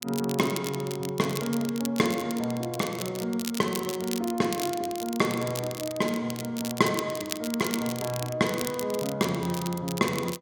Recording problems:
crackling; vinyl, SNR 9 dB

